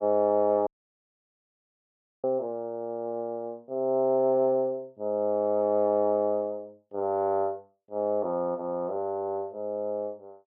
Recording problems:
audio cutting out; at 0.5 s for 1.5 s

